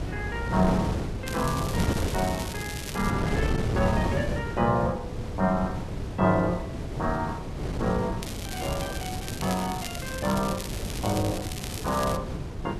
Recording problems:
wind on the microphone; below 360 Hz, SNR 3 dB
crackling; from 1.5 to 3 s and from 8 to 12 s; loose cable, SNR 9 dB

